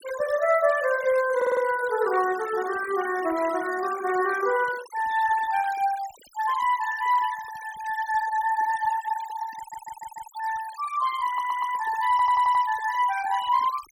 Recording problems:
denoising artefacts; signal-to-artefact ratio 16 dB
audio stuttering; 4 times, first at 1.5 s

